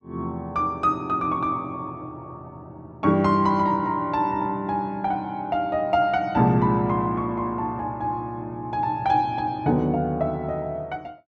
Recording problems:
none

